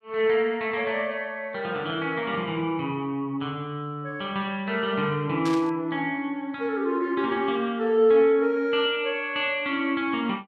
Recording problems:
static burst; at 5.5 s; peak -7 dB vs average level

